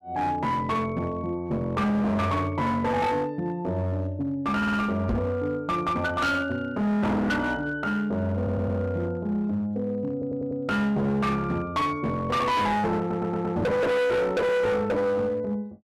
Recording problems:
distorted audio; hard clipping, uneven, signal-to-distortion ratio 7 dB
audio stuttering; 4 times, first at 4.5 s
microphone thump; at 5 s; peak +3 dB vs average level

